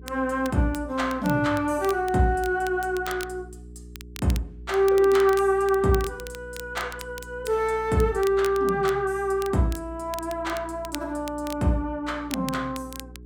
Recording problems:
hum; 60 Hz, harmonics up to 420 Hz, SNR 19 dB
crackling; vinyl, SNR 17 dB

